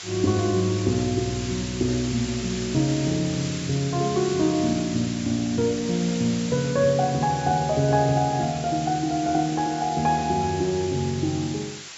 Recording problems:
treble cut off; nothing above 8 kHz
hiss; slope +2 dB per octave, SNR 11 dB

